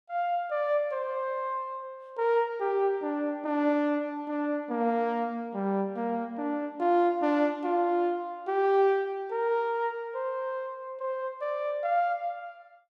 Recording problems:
none

